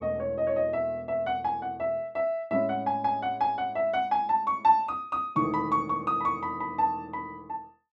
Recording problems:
none

